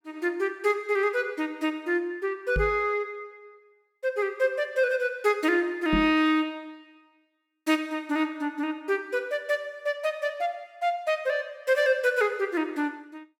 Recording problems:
microphone thump; at 2.5 s and at 6 s; peak +2 dB vs average level

